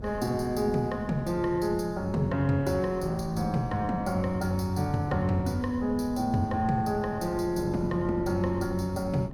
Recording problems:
wind on the microphone; below 200 Hz, SNR 13 dB

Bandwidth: 17.5 kHz